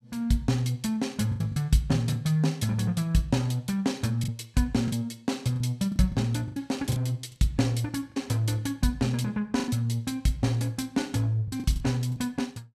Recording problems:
packet loss; 6% of the sound replaced, filled with the last packet

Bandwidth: 14 kHz